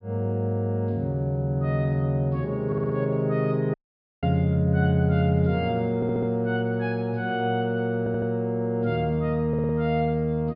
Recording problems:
treble missing; nothing above 5.1 kHz
audio stuttering; 4 times, first at 2.5 s
audio cutting out; at 3.5 s

